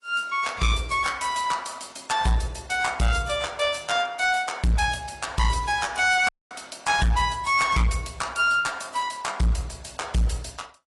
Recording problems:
codec artefacts; AAC, log-spectral distance 6 dB, nothing above 10.7 kHz
distorted audio; hard clipping, uneven, signal-to-distortion ratio 10 dB
audio cutting out; at 6.5 s

